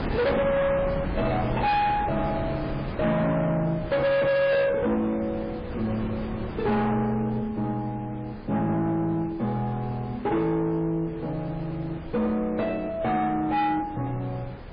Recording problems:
codec artefacts; MP3, log-spectral distance 2 dB, nothing above 4.1 kHz
distorted audio; soft clipping, signal-to-distortion ratio 7 dB
wind noise; below 690 Hz, SNR 10 dB

